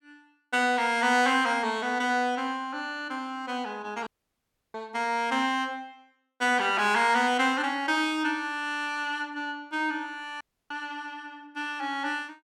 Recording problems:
dropout; at 4 s for 0.5 s and at 10 s

